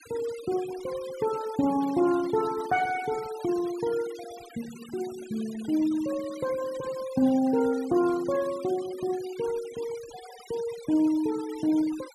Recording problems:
noise reduction artefacts; signal-to-artefact ratio 18 dB

